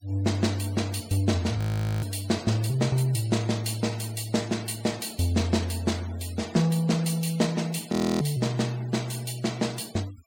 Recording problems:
denoising artefacts; signal-to-artefact ratio 20 dB
audio freezing; at 1.5 s and at 8 s

